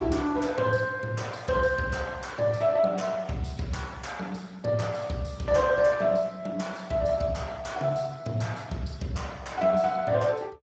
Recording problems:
codec artefacts; Speex, log-spectral distance 4 dB, nothing above 7.3 kHz

